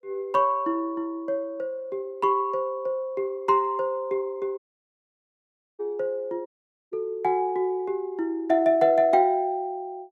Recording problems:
audio cutting out; at 4.5 s for 1 s and at 6.5 s

